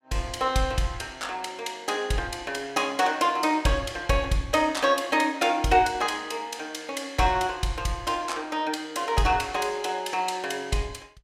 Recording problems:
none

